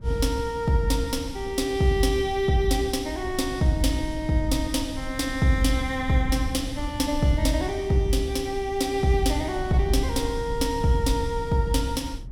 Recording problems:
rumble; below 92 Hz, SNR 13 dB

